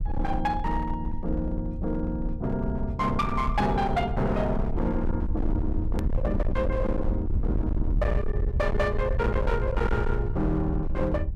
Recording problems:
distorted audio; hard clipping, uneven, signal-to-distortion ratio 8 dB
rumble; below 80 Hz, SNR 2 dB
edit click; at 6 s

